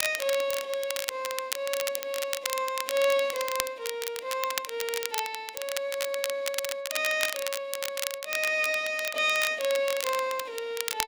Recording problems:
crackle; vinyl, SNR 5 dB

